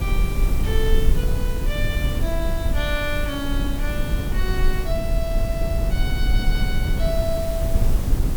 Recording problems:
background hiss; slope -2 dB per octave, SNR 9 dB
rumble; below 66 Hz, SNR -5 dB

